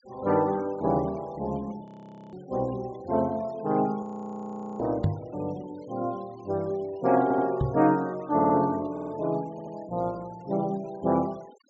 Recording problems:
low-pass filter; nothing above 8 kHz
noise reduction artefacts; signal-to-artefact ratio 25 dB
frozen audio; at 2 s and at 4 s for 1 s
microphone bump; at 5 s and at 7.5 s; peak +6 dB vs average level
stutter; 4 times, first at 7 s

